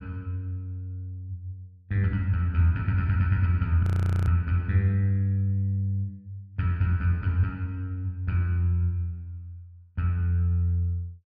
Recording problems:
audio freezing; at 4 s

